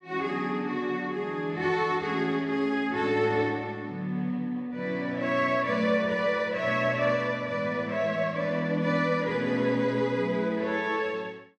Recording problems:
none

